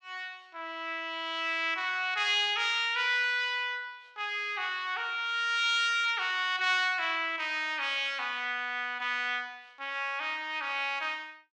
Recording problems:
none

